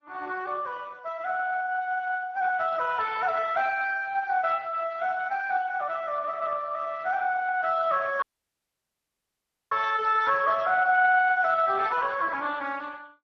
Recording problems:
codec artefacts; Vorbis, then Speex, log-spectral distance 3 dB
dropout; at 8 s for 1.5 s

